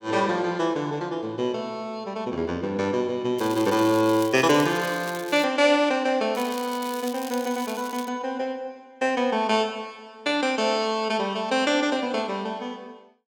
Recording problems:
crackle; from 3.5 to 5.5 s and from 6.5 to 8 s; loose cable, SNR 15 dB

